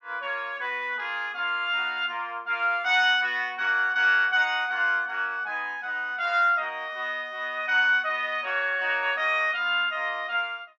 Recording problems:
none

